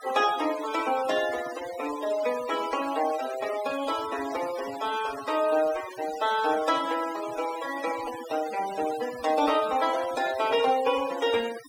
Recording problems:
noise reduction artefacts; signal-to-artefact ratio 13 dB

